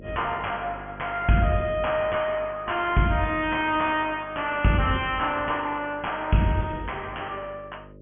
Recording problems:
treble missing; nothing above 3.3 kHz
distortion; soft clipping, signal-to-distortion ratio 9 dB
electrical hum; 50 Hz, harmonics up to 600 Hz, SNR 21 dB

